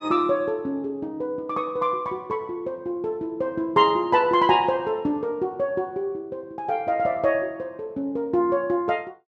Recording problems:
none

